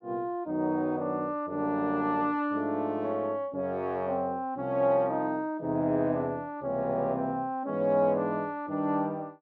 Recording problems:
none

